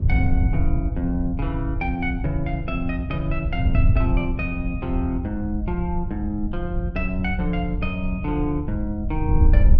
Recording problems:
wind noise; below 88 Hz, SNR -1 dB

